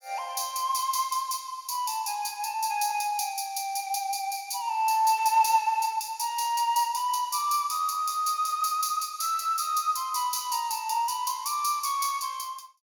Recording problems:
none

